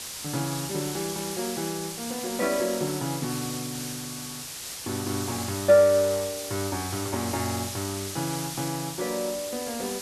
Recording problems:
background hiss; slope +1 dB per octave, SNR 6 dB

